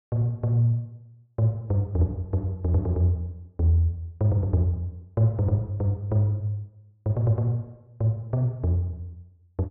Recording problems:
none

